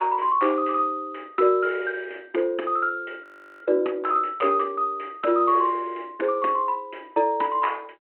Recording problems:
telephone audio; 260 Hz to 3.1 kHz, G.726
audio freezing; at 3 s

